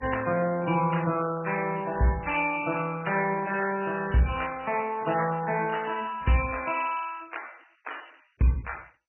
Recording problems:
codec artefacts; MP3, then MP2, log-spectral distance 10 dB, nothing above 2.7 kHz
crackling; from 1 to 4 s; loose cable, SNR 22 dB

